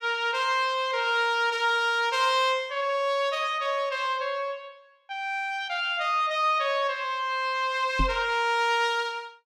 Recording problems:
knock on the microphone; at 8 s; peak +1 dB vs average level

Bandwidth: 15.5 kHz